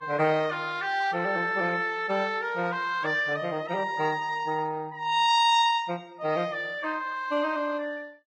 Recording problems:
codec artefacts; Vorbis, log-spectral distance 2 dB

